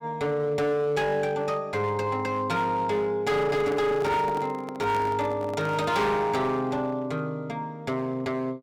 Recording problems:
distorted audio; hard clipping, signal-to-distortion ratio 10 dB
microphone handling noise; from 3.5 to 6 s; peak -5 dB vs average level

